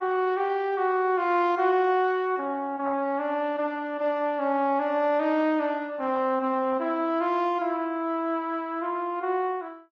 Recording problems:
codec artefacts; AAC, then Opus, log-spectral distance 2 dB

